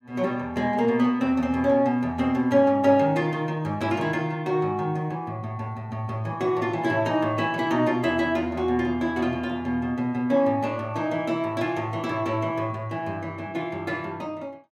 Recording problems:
none

